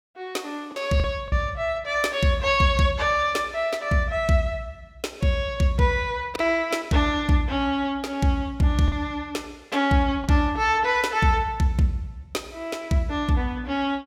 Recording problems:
lost packets; 1.8% of the sound replaced, filled with the last packet

